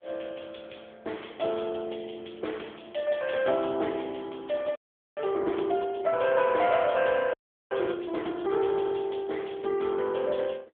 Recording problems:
phone line; 260 Hz to 3.5 kHz, AMR-NB
frozen audio; at 5 s and at 7.5 s

